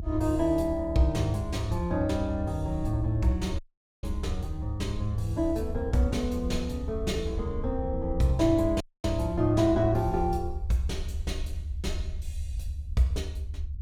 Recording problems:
low-frequency rumble; below 78 Hz, SNR 7 dB
dropout; at 3.5 s and at 9 s

